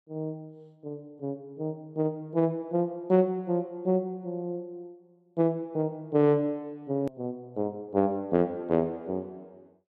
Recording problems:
edit click; at 7 s

